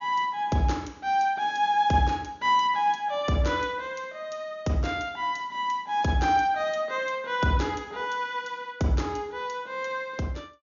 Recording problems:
treble cut off; nothing above 6.9 kHz

